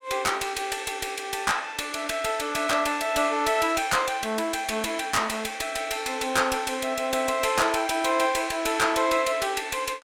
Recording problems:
distortion; soft clipping, signal-to-distortion ratio 11 dB

